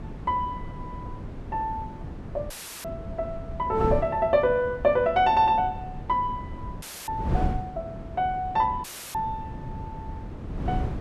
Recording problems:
wind noise; below 220 Hz, SNR 9 dB
audio cutting out; at 2.5 s, at 7 s and at 9 s

